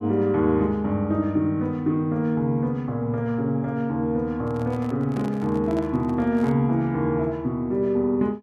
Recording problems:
handling noise; from 4.5 to 6.5 s; peak -8 dB vs average level

